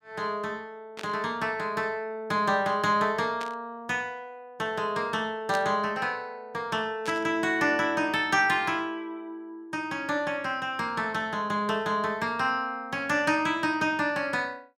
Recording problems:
static burst; 4 times, first at 1 s; peak -5 dB vs average level

